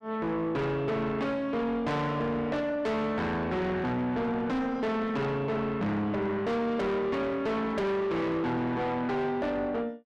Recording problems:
distorted audio; soft clipping, signal-to-distortion ratio 7 dB

